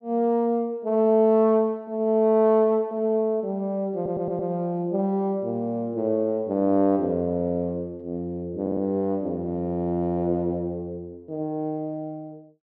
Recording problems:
audio stuttering; at 4 s and at 8.5 s

